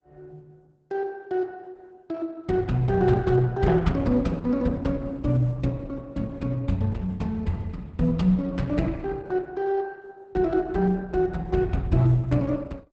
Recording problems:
codec artefacts; Opus, log-spectral distance 2 dB, nothing above 8 kHz

